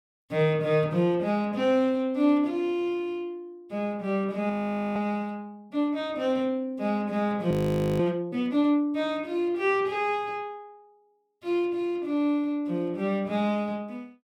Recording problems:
audio freezing; at 4.5 s and at 7.5 s

